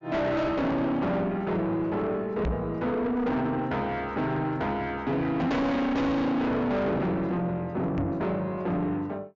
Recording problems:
treble cut off; nothing above 7.4 kHz
distorted audio; soft clipping, signal-to-distortion ratio 6 dB
microphone thump; at 2.5 s, at 5.5 s and at 8 s; peak +4 dB vs average level

